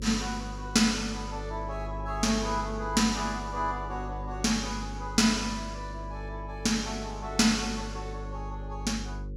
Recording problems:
hum; 50 Hz, harmonics up to 550 Hz, SNR 10 dB

